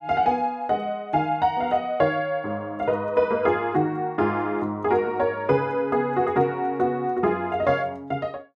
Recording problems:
none

